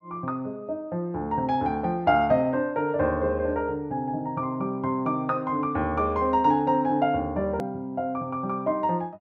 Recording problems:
edit click; at 7.5 s

